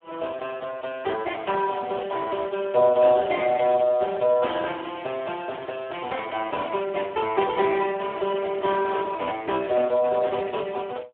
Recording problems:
phone line; 300 Hz to 2.6 kHz, Speex
static burst; at 2 s, at 4 s and at 7 s; peak -17 dB vs average level

